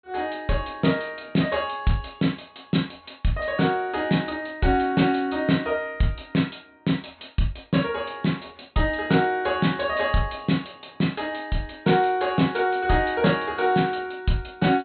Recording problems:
low-pass filter; nothing above 4.2 kHz

